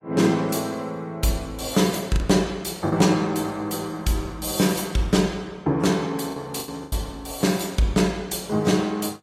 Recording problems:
lossy compression; AAC, log-spectral distance 4 dB, nothing above 14.7 kHz
lost packets; 3% of the sound replaced, filled with the last packet

